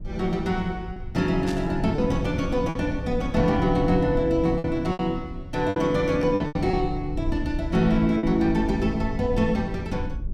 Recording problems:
rumble; below 92 Hz, SNR 10 dB
lost packets; 5% of the sound replaced, filled with repeated pitch periods
burst of static; at 1.5 s; peak -8 dB vs average level

